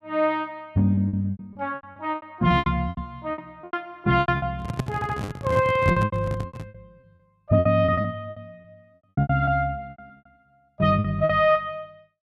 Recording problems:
packet loss; 18% of the sound replaced, filled with repeated pitch periods
handling noise; from 4.5 to 6.5 s; peak +2 dB vs average level
audio stuttering; at 5 s

